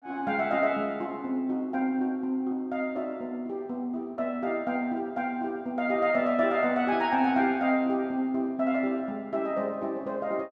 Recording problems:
none

